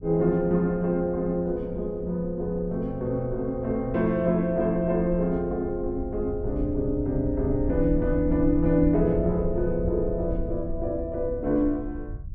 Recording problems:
rumble; below 84 Hz, SNR 10 dB

